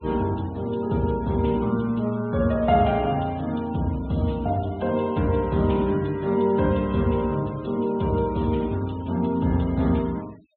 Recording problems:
treble cut off; nothing above 4 kHz
noise reduction artefacts; signal-to-artefact ratio 24 dB

